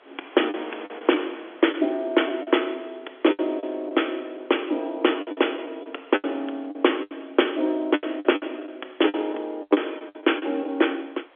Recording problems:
phone line; 260 Hz to 3.4 kHz, G.711
wind on the microphone; below 2.4 kHz, SNR 24 dB
lost packets; 11% of the sound replaced, filled with the last packet

